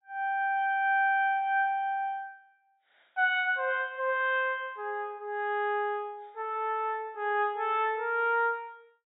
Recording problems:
treble missing; nothing above 4 kHz

